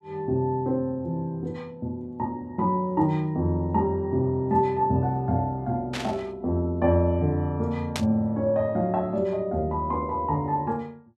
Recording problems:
burst of static; at 6 s and at 8 s; peak 0 dB vs average level

